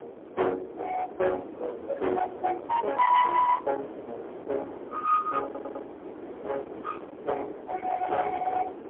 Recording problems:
phone line; 300 Hz to 3.7 kHz, AMR-NB, then MP3
distorted audio; hard clipping, signal-to-distortion ratio 10 dB
wind on the microphone; below 1 kHz, SNR 10 dB
audio stuttering; at 5.5 s

